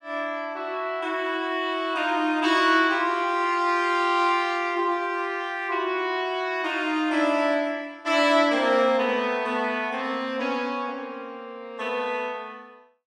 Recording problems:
none

